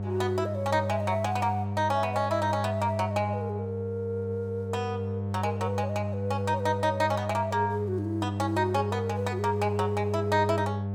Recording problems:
hum; 50 Hz, harmonics up to 900 Hz, SNR 4 dB

